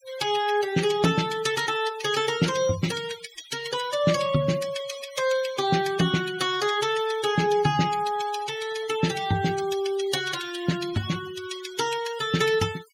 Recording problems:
noise reduction artefacts; signal-to-artefact ratio 13 dB

